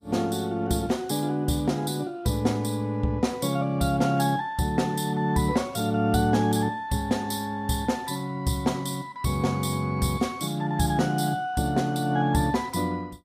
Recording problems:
lossy codec; Vorbis, log-spectral distance 3 dB, nothing above 15.1 kHz

